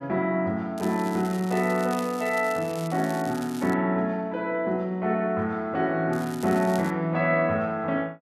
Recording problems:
crackle; from 1 to 3.5 s and at 6 s; loose cable, SNR 18 dB

